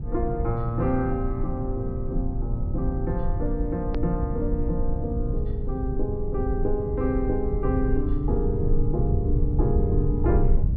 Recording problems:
low-pass filter; nothing above 5.5 kHz
mains hum; 60 Hz, harmonics up to 600 Hz, SNR 24 dB
low-frequency rumble; below 92 Hz, SNR -1 dB
edit click; at 4 s

